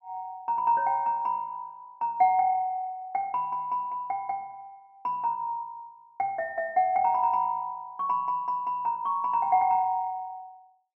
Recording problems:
none

